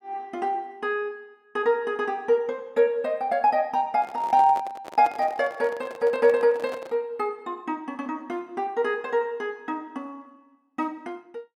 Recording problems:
handling noise; from 4 to 7 s; peak -8 dB vs average level

